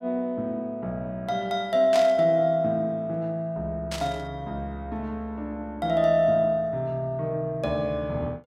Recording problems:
static burst; at 2 s and at 4 s; peak -3 dB vs average level

